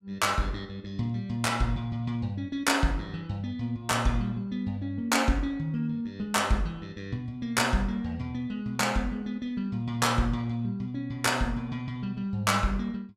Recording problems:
none

